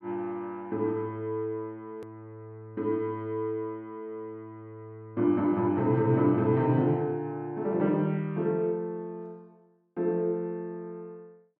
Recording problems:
click at an edit; at 2 s

